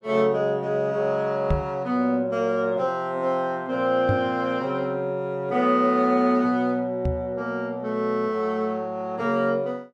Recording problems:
microphone bump; at 1.5 s, at 4 s and at 7 s; peak +3 dB vs average level

